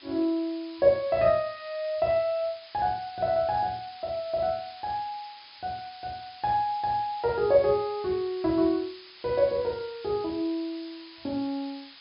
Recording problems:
treble cut off; nothing above 5.2 kHz
hiss; SNR 19 dB

